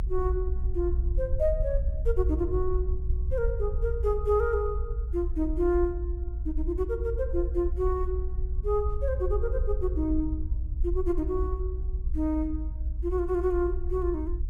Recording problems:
rumble; below 60 Hz, SNR 1 dB

